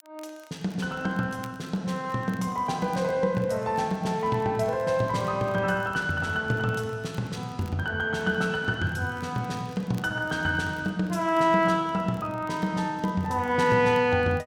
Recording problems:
crackle; vinyl, SNR 29 dB

